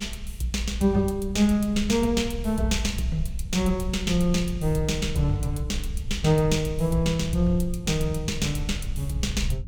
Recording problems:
rumble; below 76 Hz, SNR 9 dB

